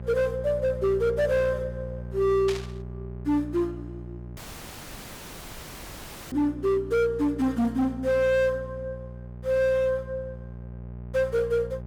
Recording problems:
distorted audio; hard clipping, signal-to-distortion ratio 12 dB
hum; 60 Hz, harmonics up to 840 Hz, SNR 13 dB
static burst; at 2.5 s; peak -5 dB vs average level
audio cutting out; at 4.5 s for 2 s

